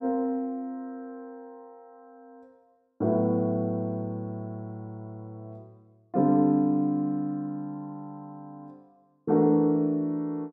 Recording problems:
none

